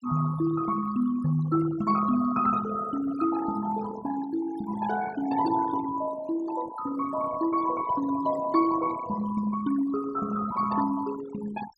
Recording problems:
denoising artefacts; signal-to-artefact ratio 14 dB

